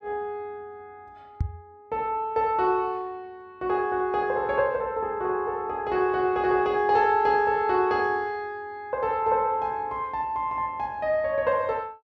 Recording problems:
microphone bump; at 1.5 s; peak +2 dB vs average level

